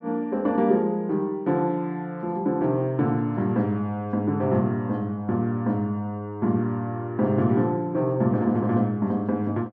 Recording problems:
none

